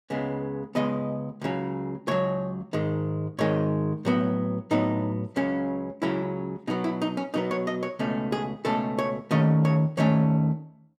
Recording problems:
none

